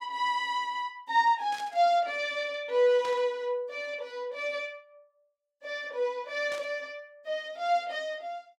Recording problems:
burst of static; at 1.5 s, at 3 s and at 6.5 s; peak -9 dB vs average level

